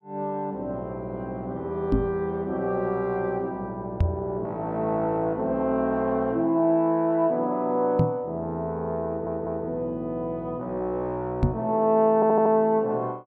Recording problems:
knock on the microphone; 4 times, first at 2 s; peak +7 dB vs average level
audio stuttering; at 9 s and at 12 s

